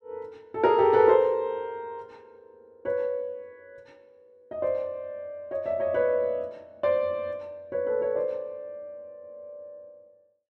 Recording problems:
none

